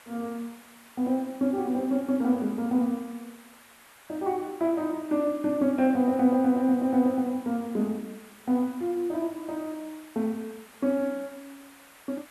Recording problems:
background hiss; SNR 24 dB

